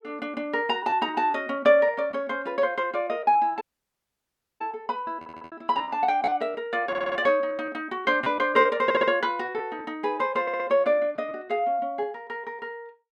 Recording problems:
lost packets; 8% of the sound replaced, filled with repeated pitch periods
dropout; at 3.5 s for 1 s
audio stuttering; 4 times, first at 5 s

